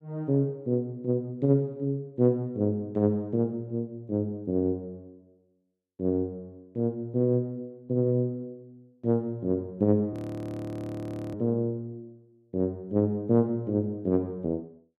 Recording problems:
audio freezing; at 10 s for 1 s

